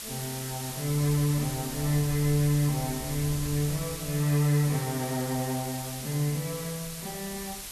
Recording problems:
background hiss; slope +1 dB per octave, SNR 8 dB
wind noise; below 100 Hz, SNR 17 dB

